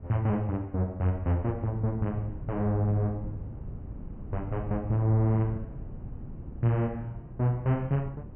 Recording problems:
low-pass filter; nothing above 3.1 kHz
wind noise; below 160 Hz, SNR 13 dB

